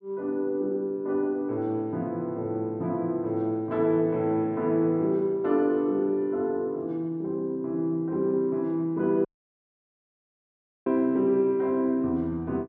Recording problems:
dropout; at 9.5 s for 1.5 s

